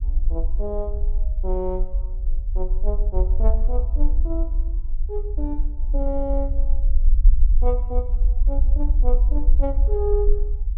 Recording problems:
rumble; below 46 Hz, strongest tone 20 Hz, SNR -7 dB

